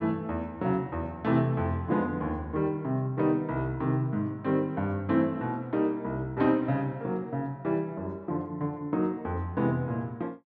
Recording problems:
none

